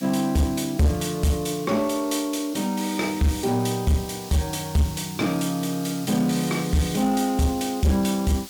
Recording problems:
distortion; soft clipping, signal-to-distortion ratio 10 dB
background hiss; slope +3 dB per octave, SNR 15 dB

